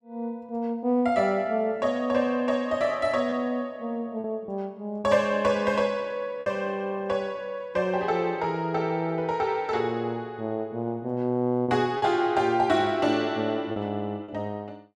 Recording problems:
packet loss; 2% of the sound replaced, filled with repeated pitch periods

